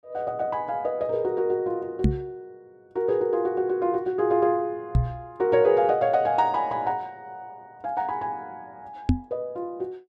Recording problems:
microphone bump; at 2 s, at 5 s and at 9 s; peak +8 dB vs average level

